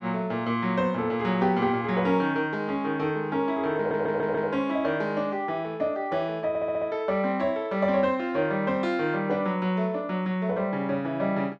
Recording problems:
audio stuttering; at 4 s and at 6.5 s

